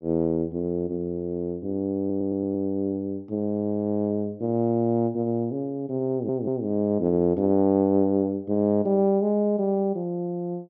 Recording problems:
stutter; at 2 s and at 6 s

